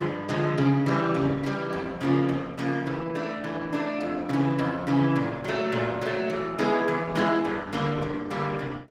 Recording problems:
codec artefacts; Opus, log-spectral distance 4 dB

